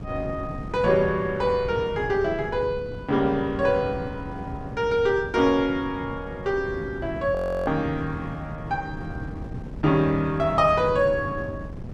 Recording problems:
wind on the microphone; below 250 Hz, SNR 11 dB
frozen audio; at 7.5 s

